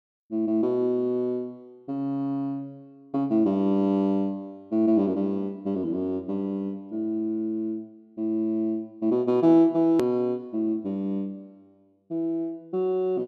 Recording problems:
hard cut with a click; at 10 s

